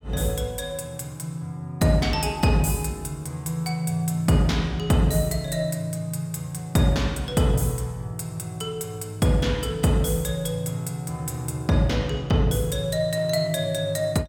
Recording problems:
none

